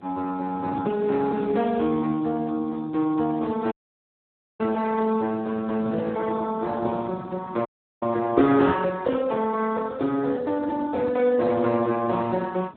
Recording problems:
phone line; 170 Hz to 2 kHz, Speex
wind noise; below 410 Hz, SNR 19 dB
audio cutting out; at 3.5 s for 1 s and at 7.5 s

